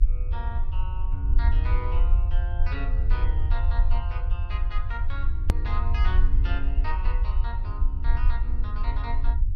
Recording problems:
mains hum; 50 Hz, harmonics up to 350 Hz, SNR 15 dB
rumble; below 60 Hz, SNR -11 dB
click at an edit; at 5.5 s

